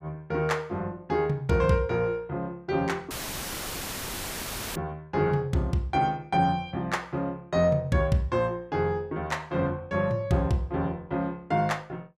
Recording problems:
dropout; at 3 s for 1.5 s; filled with static

